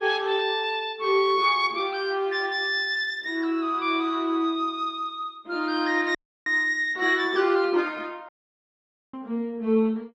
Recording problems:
lossy compression; Opus, log-spectral distance 2 dB
dropout; at 6 s and at 8.5 s for 1 s

